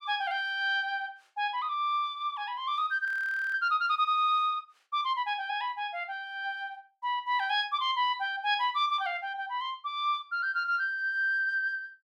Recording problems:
audio freezing; at 3 s

